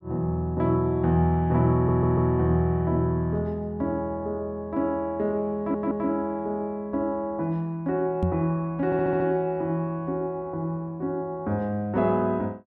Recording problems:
audio stuttering; at 1.5 s, at 5.5 s and at 9 s
microphone thump; at 8 s; peak +4 dB vs average level

